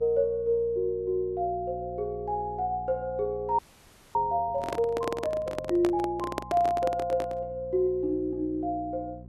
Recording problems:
electrical hum; 60 Hz, harmonics up to 540 Hz, SNR 17 dB
frozen audio; at 3.5 s for 0.5 s
handling noise; from 4.5 to 7.5 s; peak +1 dB vs average level

